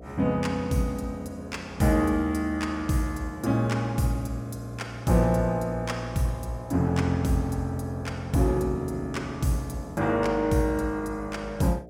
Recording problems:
hum; 60 Hz, harmonics up to 720 Hz, SNR 19 dB

